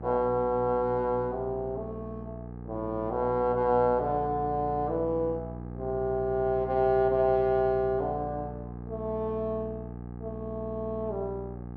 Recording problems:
electrical hum; 60 Hz, harmonics up to 1.3 kHz, SNR 12 dB

